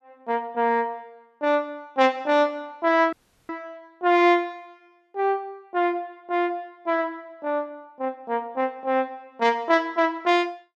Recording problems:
dropout; at 3 s

